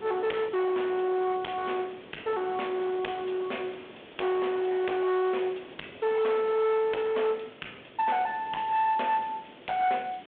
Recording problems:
phone line; 280 Hz to 3.2 kHz, G.726
distortion; hard clipping, uneven, signal-to-distortion ratio 9 dB
hiss; SNR 24 dB
wind noise; below 870 Hz, SNR 20 dB

